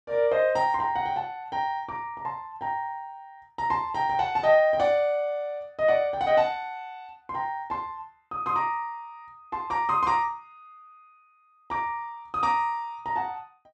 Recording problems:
none

